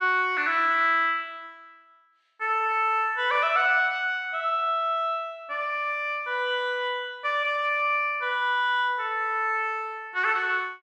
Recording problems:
none

